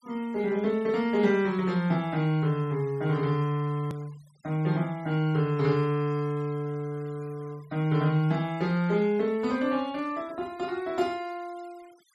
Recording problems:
noise reduction artefacts; signal-to-artefact ratio 26 dB
hard cut with a click; at 4 s

